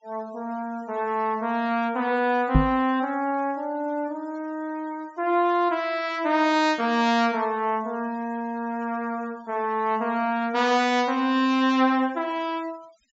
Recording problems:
treble cut off; nothing above 8 kHz
denoising artefacts; signal-to-artefact ratio 26 dB
microphone bump; at 2.5 s; peak +8 dB vs average level

